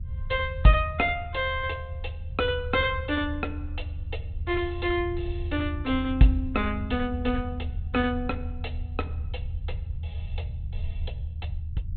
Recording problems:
low-pass filter; nothing above 4 kHz
rumble; below 80 Hz, SNR 7 dB

